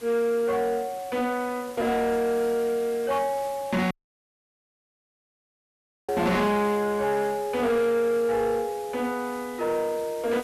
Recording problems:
distorted audio; soft clipping, signal-to-distortion ratio 10 dB
background hiss; slope -2 dB per octave, SNR 19 dB
dropout; at 4 s for 2 s

